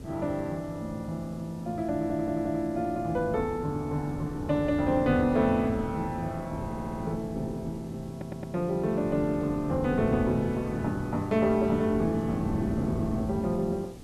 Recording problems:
hum; 60 Hz, harmonics up to 2.5 kHz, SNR 27 dB
background hiss; SNR 27 dB
wind on the microphone; below 330 Hz, SNR 8 dB
stutter; at 2 s, at 6.5 s and at 8 s

